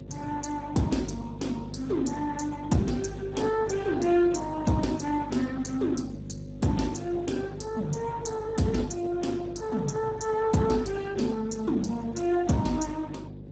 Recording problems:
lossy codec; Speex, log-spectral distance 4 dB, nothing above 7.3 kHz
hum; 50 Hz, harmonics up to 550 Hz, SNR 12 dB

